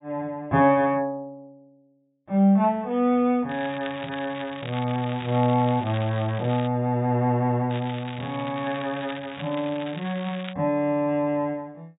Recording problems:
treble missing; nothing above 4 kHz
crackling; from 3.5 to 6.5 s and from 7.5 to 11 s; loose cable, SNR 16 dB

